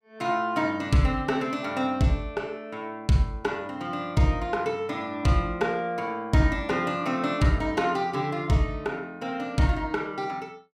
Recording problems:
none

